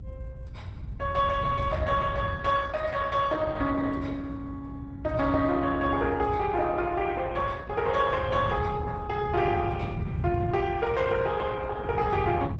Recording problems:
lossy codec; Opus, log-spectral distance 3 dB, nothing above 7.8 kHz
low-frequency rumble; below 130 Hz, SNR 6 dB

